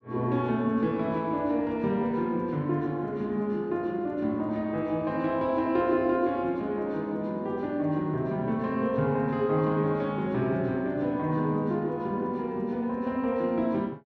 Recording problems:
none

